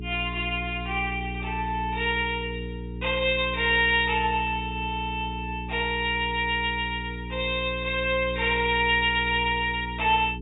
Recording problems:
low-pass filter; nothing above 4 kHz
electrical hum; 60 Hz, harmonics up to 420 Hz, SNR 10 dB

